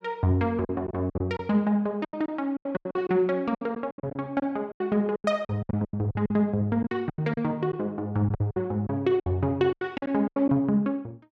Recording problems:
packet loss; 15% of the sound replaced, filled with silence

